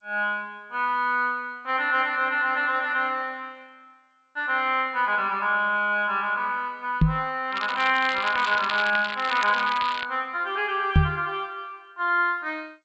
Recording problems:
lossy compression; G.722, log-spectral distance 4 dB, nothing above 7.6 kHz
microphone thump; at 7 s and at 11 s; peak +9 dB vs average level
crackle; from 7.5 to 10 s; loose cable, SNR 9 dB

